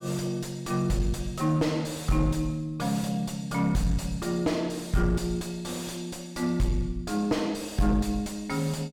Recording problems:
distortion; soft clipping, signal-to-distortion ratio 4 dB

